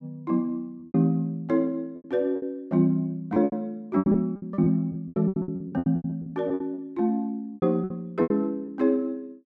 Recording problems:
packet loss; 16% of the sound replaced, filled with repeated pitch periods

